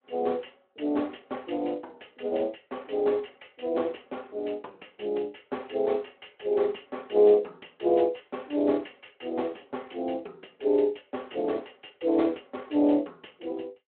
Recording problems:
telephone audio; 260 Hz to 3.3 kHz, Speex

